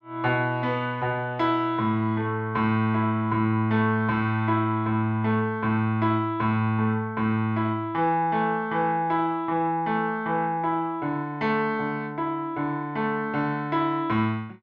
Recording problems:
none

